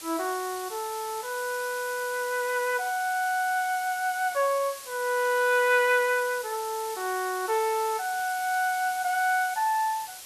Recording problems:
background hiss; slope +2 dB per octave, SNR 12 dB

